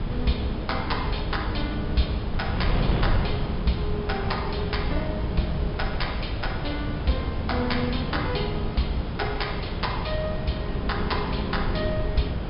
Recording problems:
treble missing; nothing above 5.5 kHz
hum; 50 Hz, harmonics up to 400 Hz, SNR 19 dB
background hiss; slope -5 dB per octave, SNR 15 dB
rumble; below 84 Hz, SNR 8 dB
wind noise; below 240 Hz, SNR 1 dB

